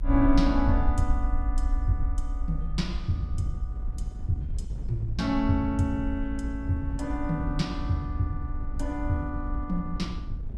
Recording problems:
rumble; below 54 Hz, SNR 4 dB
wind on the microphone; below 94 Hz, SNR 9 dB

